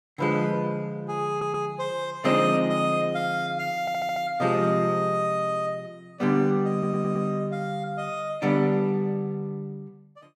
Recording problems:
audio stuttering; at 1.5 s, at 4 s and at 6.5 s

